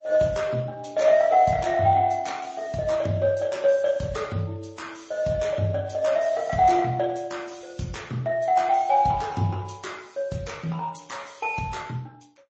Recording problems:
lossy compression; Speex, then MP3, log-spectral distance 4 dB, nothing above 7.3 kHz

